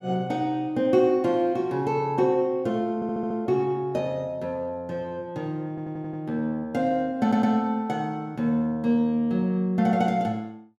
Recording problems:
audio stuttering; at 3 s, at 5.5 s and at 7 s

